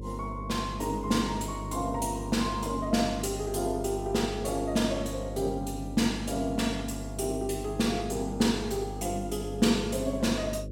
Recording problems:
hum; 50 Hz, harmonics up to 550 Hz, SNR 9 dB

